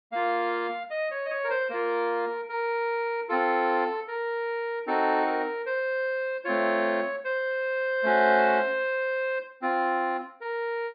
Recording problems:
low-pass filter; nothing above 4.7 kHz

